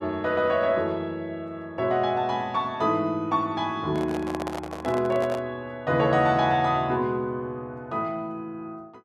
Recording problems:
handling noise; from 4 to 5.5 s; peak -3 dB vs average level

